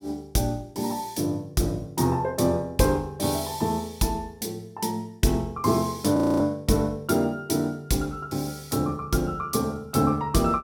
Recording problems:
frozen audio; at 6 s

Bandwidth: 17.5 kHz